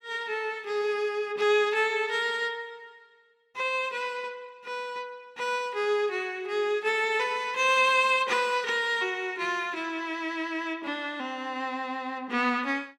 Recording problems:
none

